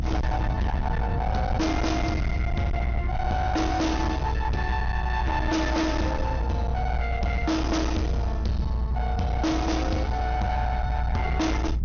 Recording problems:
low-pass filter; nothing above 6.5 kHz
distortion; hard clipping, uneven, signal-to-distortion ratio 7 dB
rumble; below 110 Hz, strongest tone 58 Hz, SNR 1 dB

